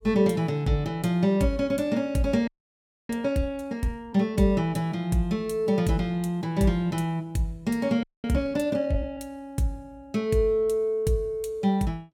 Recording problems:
frozen audio; at 2.5 s for 0.5 s and at 8 s

